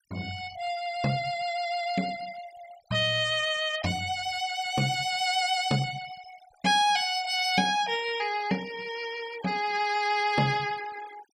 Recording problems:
noise reduction artefacts; signal-to-artefact ratio 18 dB

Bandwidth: 16 kHz